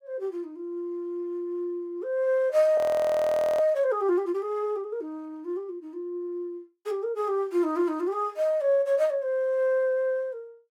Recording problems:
frozen audio; at 3 s for 1 s

